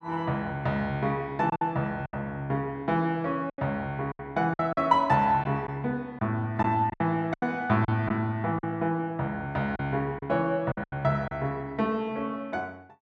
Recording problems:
packet loss; 7% of the sound replaced, filled with silence

